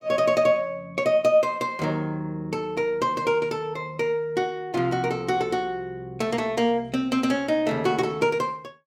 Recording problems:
none

